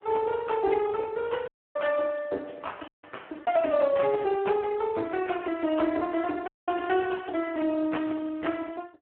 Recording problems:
phone line; 240 Hz to 3.2 kHz, Speex
audio cutting out; at 1.5 s, at 3 s and at 6.5 s

